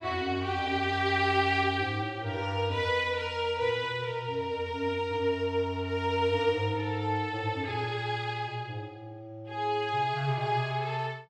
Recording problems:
none

